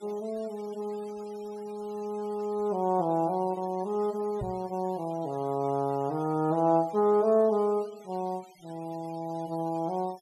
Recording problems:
noise reduction artefacts; signal-to-artefact ratio 25 dB
knock on the microphone; at 4.5 s; peak -3 dB vs average level

